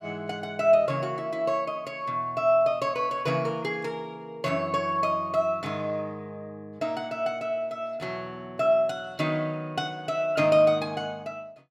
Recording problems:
none

